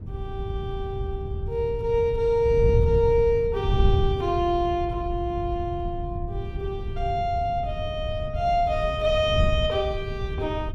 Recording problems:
wind noise; below 110 Hz, SNR 5 dB

